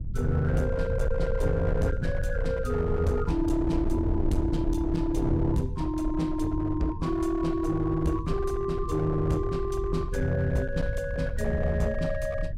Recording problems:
distorted audio; hard clipping, uneven, signal-to-distortion ratio 10 dB
low-frequency rumble; below 92 Hz, SNR 5 dB

